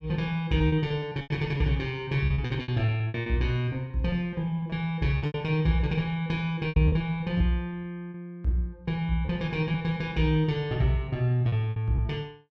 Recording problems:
lost packets; 9% of the sound replaced, filled with repeated pitch periods

